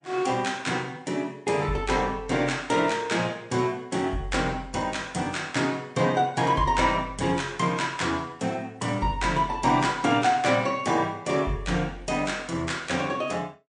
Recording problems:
codec artefacts; MP3, log-spectral distance 2 dB, nothing above 9.2 kHz

